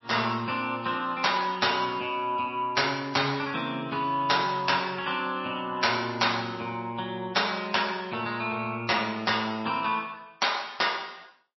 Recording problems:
codec artefacts; MP3, log-spectral distance 5 dB, nothing above 5.7 kHz

